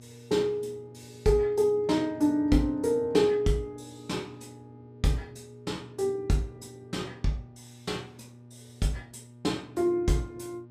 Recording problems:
hum; 60 Hz, harmonics up to 960 Hz, SNR 22 dB

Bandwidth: 15 kHz